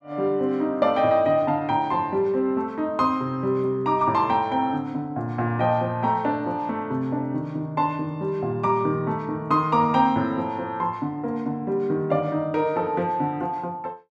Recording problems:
none

